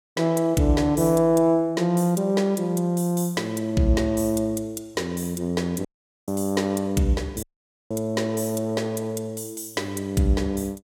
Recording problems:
dropout; at 6 s and at 7.5 s

